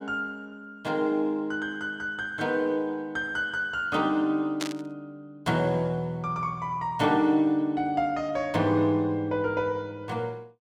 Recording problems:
static burst; at 4.5 s; peak 0 dB vs average level

